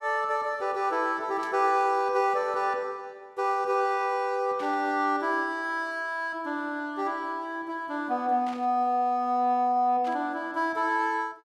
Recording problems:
static burst; 4 times, first at 1.5 s; peak -13 dB vs average level

